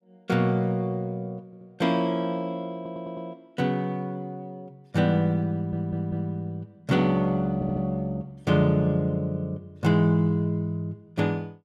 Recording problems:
audio stuttering; 4 times, first at 1.5 s

